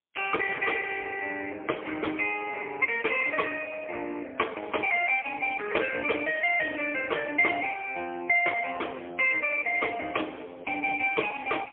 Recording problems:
telephone audio; 260 Hz to 3.3 kHz, AMR-NB, then MP3

